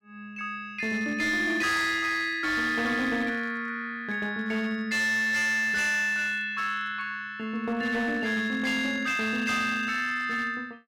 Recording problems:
distortion; hard clipping, signal-to-distortion ratio 12 dB

